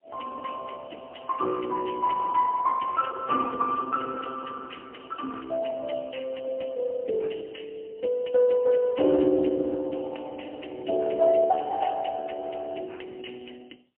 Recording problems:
telephone audio; 260 Hz to 2 kHz, AMR-NB, then MP3

